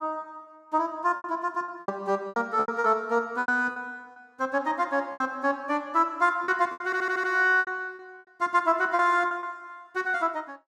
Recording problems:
packet loss; 10% of the sound replaced, filled with repeated pitch periods
audio stuttering; at 7 s

